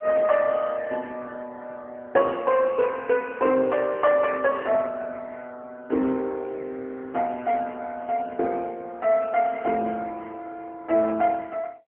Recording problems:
telephone audio; 220 Hz to 3.3 kHz, AMR-NB

